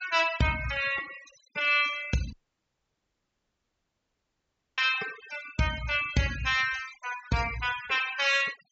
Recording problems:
low-pass filter; nothing above 8 kHz
noise reduction artefacts; signal-to-artefact ratio 13 dB
dropout; at 2.5 s for 2.5 s

